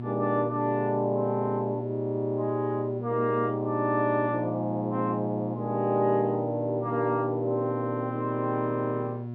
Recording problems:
hum; 60 Hz, harmonics up to 720 Hz, SNR 8 dB

